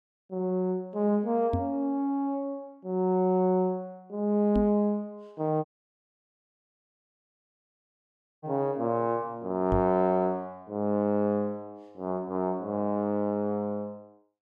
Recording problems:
knock on the microphone; at 1.5 s, at 4.5 s and at 9.5 s; peak +2 dB vs average level
dropout; at 5.5 s for 3 s

